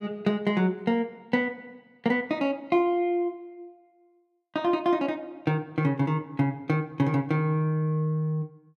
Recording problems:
none

